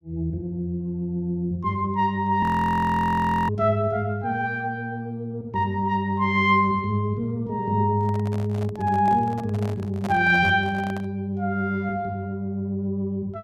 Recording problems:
audio freezing; at 2.5 s for 1 s
handling noise; from 8 to 11 s; peak -6 dB vs average level

